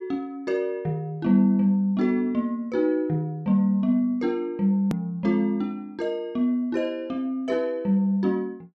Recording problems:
edit click; at 5 s

